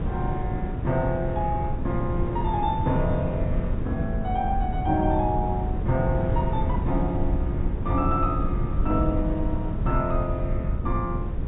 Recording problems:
treble cut off; nothing above 4 kHz
rumble; below 110 Hz, SNR 2 dB
wind noise; below 330 Hz, SNR 6 dB

